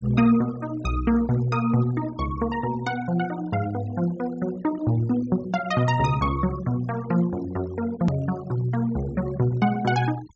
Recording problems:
treble cut off; nothing above 8 kHz
noise reduction artefacts; signal-to-artefact ratio 20 dB
click at an edit; at 8 s

